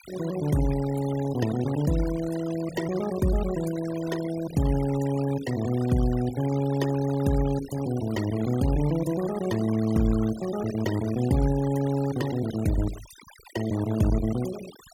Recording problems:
denoising artefacts; signal-to-artefact ratio 15 dB

